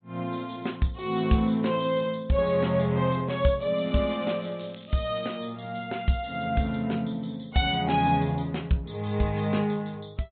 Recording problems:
treble cut off; nothing above 3.7 kHz
codec artefacts; MP3, log-spectral distance 4 dB
crackling; from 4 to 5.5 s; loose cable, SNR 27 dB

